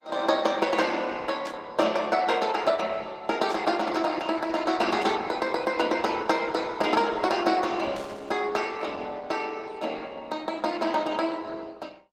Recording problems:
lossy codec; Opus, log-spectral distance 4 dB
static burst; 4 times, first at 1.5 s; peak -11 dB vs average level

